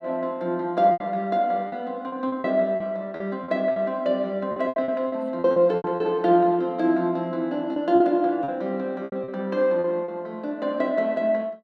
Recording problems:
packet loss; 10% of the sound replaced, filled with repeated pitch periods

